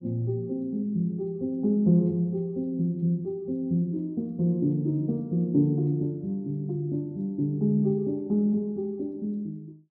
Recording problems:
none

